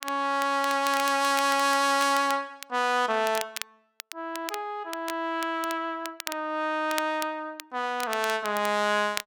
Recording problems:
crackle; vinyl, SNR 13 dB

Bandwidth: 17 kHz